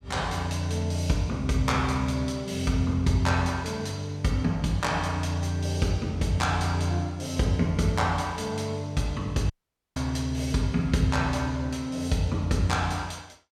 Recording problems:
audio cutting out; at 9.5 s

